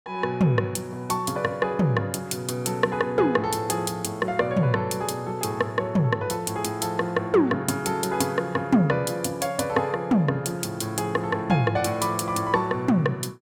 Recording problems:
none

